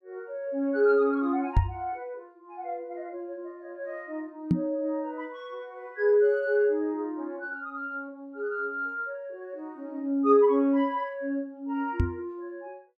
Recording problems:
microphone thump; at 1.5 s, at 4.5 s and at 12 s; peak +8 dB vs average level

